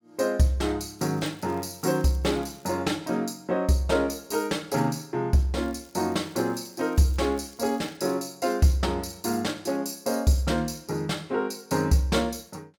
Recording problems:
crackling; from 1 to 2.5 s and from 5.5 to 8 s; loose cable, SNR 28 dB

